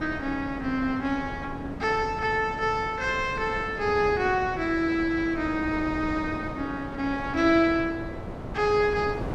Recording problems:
wind on the microphone; below 540 Hz, SNR 11 dB

